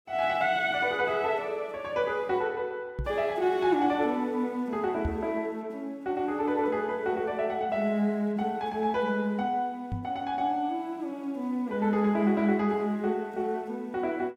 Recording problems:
knock on the microphone; at 3 s, at 5 s and at 10 s; peak +1 dB vs average level

